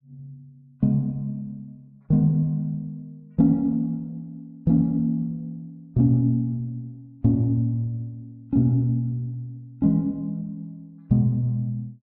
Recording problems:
none

